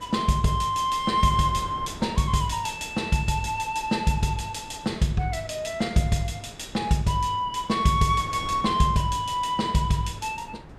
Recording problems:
wind noise; below 560 Hz, SNR 18 dB

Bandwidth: 14.5 kHz